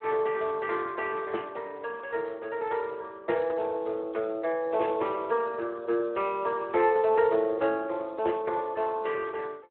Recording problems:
phone line; 280 Hz to 2.7 kHz, Speex

